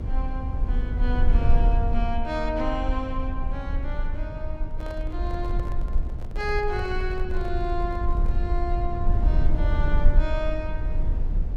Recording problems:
mains hum; 50 Hz, harmonics up to 600 Hz, SNR 16 dB
low-frequency rumble; below 54 Hz, strongest tone 18 Hz, SNR -4 dB
handling noise; from 4.5 to 8.5 s; peak -7 dB vs average level

